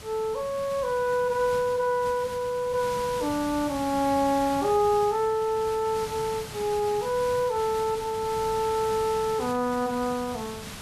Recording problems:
background hiss; slope -1 dB per octave, SNR 13 dB

